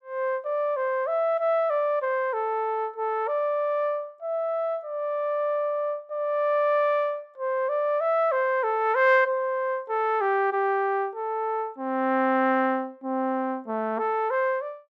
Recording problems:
none

